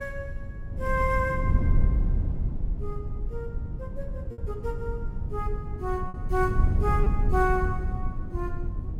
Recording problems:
wind noise; below 94 Hz, SNR -1 dB
packet loss; 1.9% of the sound replaced, filled with repeated pitch periods

